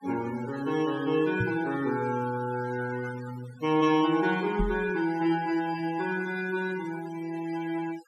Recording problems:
denoising artefacts; signal-to-artefact ratio 18 dB
microphone bump; at 1.5 s and at 4.5 s; peak +2 dB vs average level

